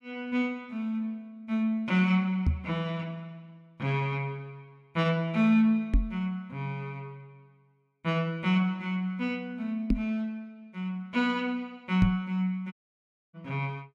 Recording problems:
microphone thump; 4 times, first at 2.5 s; peak +7 dB vs average level
audio cutting out; at 13 s for 0.5 s

